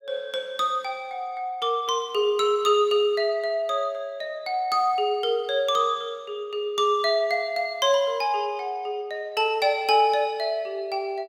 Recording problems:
none

